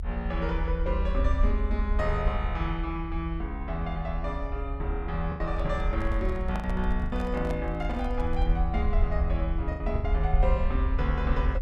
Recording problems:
rumble; below 68 Hz, SNR -1 dB
lost packets; 4% of the sound replaced, filled with the last packet
microphone handling noise; from 5.5 to 8.5 s; peak -2 dB vs average level

